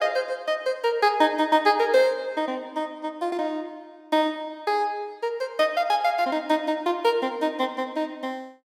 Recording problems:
none

